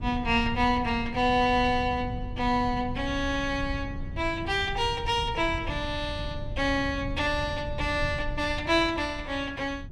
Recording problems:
low-frequency rumble; below 120 Hz, SNR 10 dB

